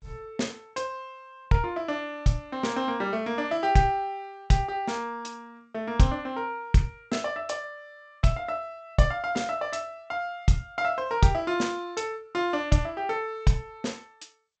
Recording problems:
lossy codec; G.722, log-spectral distance 2 dB, nothing above 7.8 kHz

